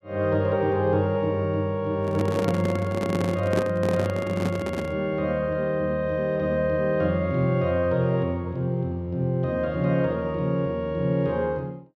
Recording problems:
microphone handling noise; from 2 to 5 s; peak +2 dB vs average level

